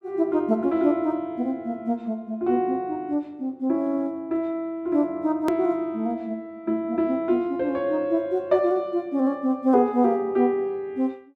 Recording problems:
edit click; at 5.5 s

